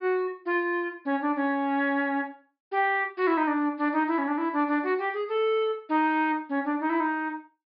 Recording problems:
treble cut off; nothing above 5.5 kHz

